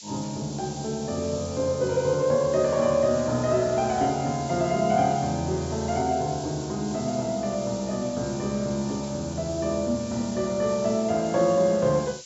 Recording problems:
low-pass filter; nothing above 8 kHz
hiss; SNR 15 dB

